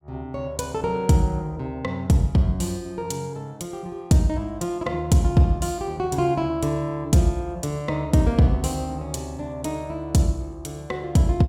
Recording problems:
none

